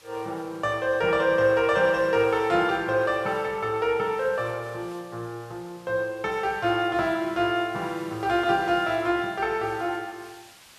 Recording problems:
hiss; slope 0 dB per octave, SNR 25 dB

